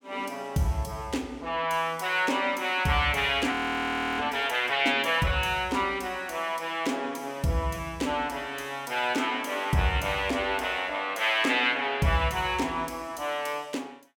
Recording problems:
frozen audio; at 3.5 s for 0.5 s

